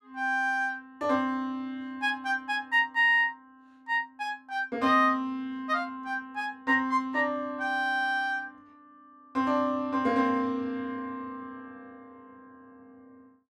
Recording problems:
none

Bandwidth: 13 kHz